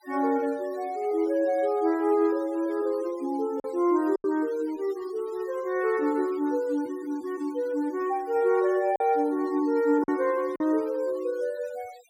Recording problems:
denoising artefacts; signal-to-artefact ratio 25 dB
lost packets; 2% of the sound replaced, filled with silence

